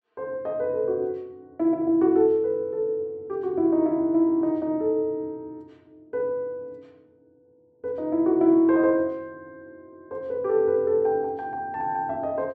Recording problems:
none

